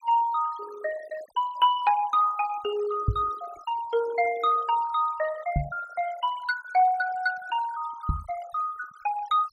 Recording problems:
denoising artefacts; signal-to-artefact ratio 18 dB
microphone thump; at 3 s, at 5.5 s and at 8 s; peak +6 dB vs average level

